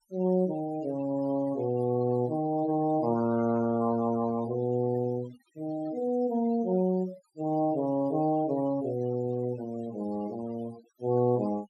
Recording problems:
noise reduction artefacts; signal-to-artefact ratio 21 dB

